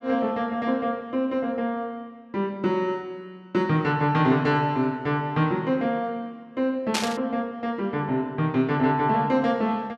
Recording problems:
static burst; at 7 s; peak +4 dB vs average level

